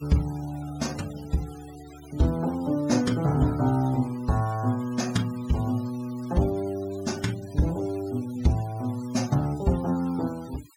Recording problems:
denoising artefacts; signal-to-artefact ratio 19 dB

